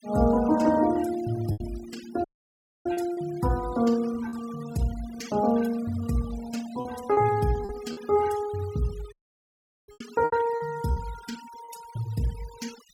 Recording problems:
denoising artefacts; signal-to-artefact ratio 17 dB
packet loss; 6% of the sound replaced, filled with repeated pitch periods
audio cutting out; at 2 s for 0.5 s and at 9 s for 1 s

